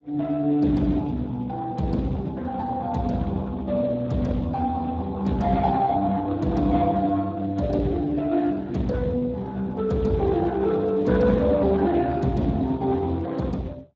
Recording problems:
lossy codec; Speex, log-spectral distance 3 dB

